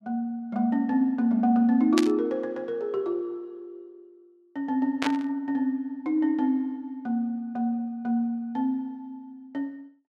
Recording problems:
burst of static; at 2 s and at 5 s; peak +3 dB vs average level

